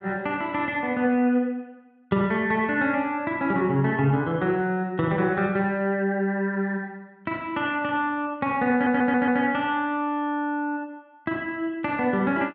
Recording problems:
stutter; at 8.5 s

